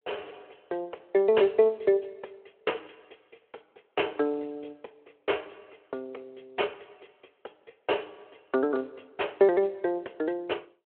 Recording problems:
telephone audio; 320 Hz to 3.2 kHz, Speex

